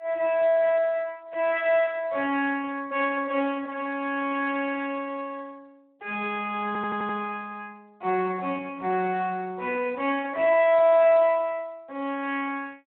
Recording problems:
telephone audio; 240 Hz to 3.3 kHz, Speex
audio stuttering; at 6.5 s

